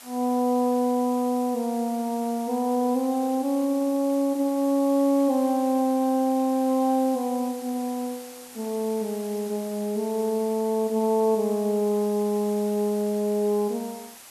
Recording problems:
background hiss; SNR 18 dB

